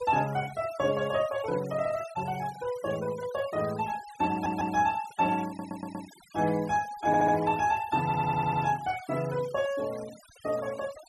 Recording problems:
denoising artefacts; signal-to-artefact ratio 18 dB
stutter; 4 times, first at 4.5 s

